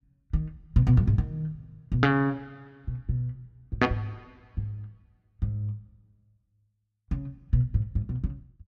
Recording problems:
none

